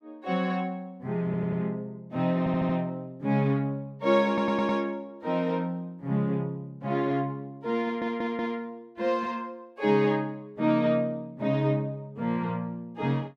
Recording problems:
audio stuttering; 4 times, first at 1.5 s

